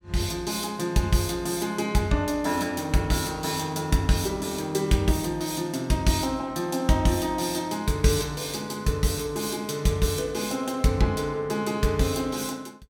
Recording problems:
none

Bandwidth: 17 kHz